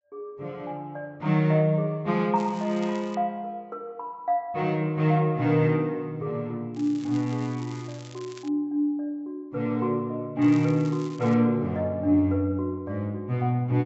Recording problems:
treble cut off; nothing above 7.8 kHz
crackling; at 2.5 s, from 7 to 8.5 s and at 10 s; loose cable, SNR 23 dB

